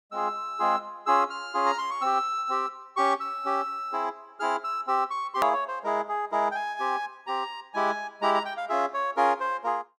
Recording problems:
edit click; at 5.5 s

